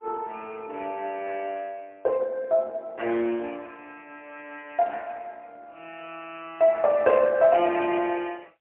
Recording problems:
phone line; 300 Hz to 3.1 kHz, AMR-NB, then MP3

